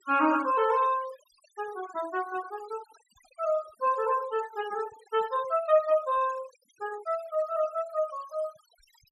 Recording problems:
noise reduction artefacts; signal-to-artefact ratio 18 dB

